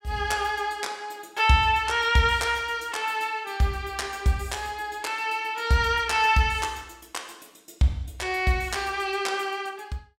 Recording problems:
none

